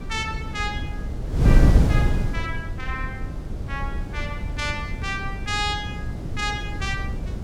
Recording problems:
wind on the microphone; below 140 Hz, SNR -4 dB

